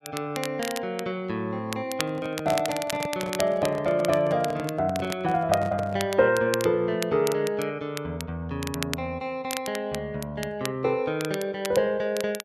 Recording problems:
crackling; vinyl, SNR 11 dB
handling noise; from 2 to 6 s; peak -4 dB vs average level

